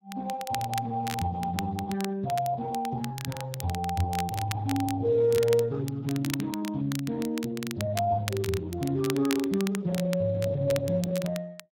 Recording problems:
lossy compression; Speex, log-spectral distance 2 dB
crackling; vinyl, SNR 12 dB

